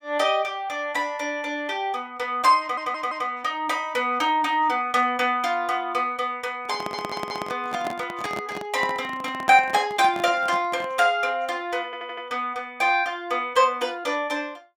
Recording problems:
audio stuttering; at 2.5 s, at 7 s and at 12 s
handling noise; from 6.5 to 11 s; peak -4 dB vs average level

